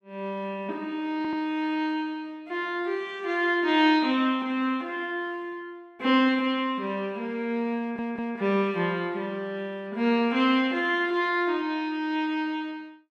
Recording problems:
audio stuttering; at 1 s and at 8 s

